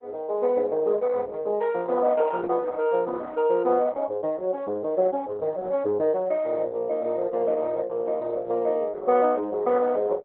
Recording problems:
lossy codec; Opus, log-spectral distance 2 dB, nothing above 3.8 kHz

